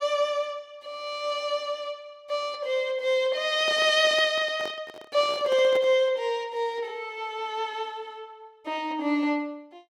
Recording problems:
handling noise; from 3.5 to 6 s; peak -6 dB vs average level

